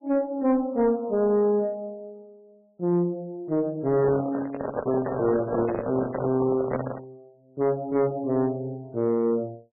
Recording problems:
lossy codec; MP3, log-spectral distance 2 dB, nothing above 2.1 kHz
distortion; soft clipping, signal-to-distortion ratio 11 dB
handling noise; from 4 to 7 s; peak +2 dB vs average level

